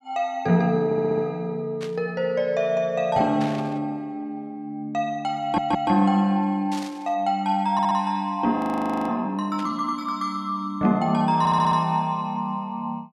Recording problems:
audio stuttering; 4 times, first at 1 s
burst of static; 4 times, first at 2 s; peak -9 dB vs average level
frozen audio; at 8.5 s for 0.5 s

